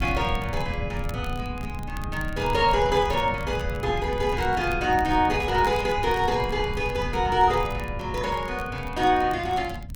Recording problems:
rumble; below 140 Hz, SNR 9 dB
crackling; vinyl, SNR 24 dB

